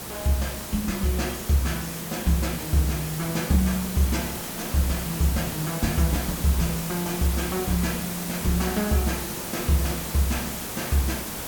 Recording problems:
background hiss; slope -3 dB per octave, SNR 5 dB

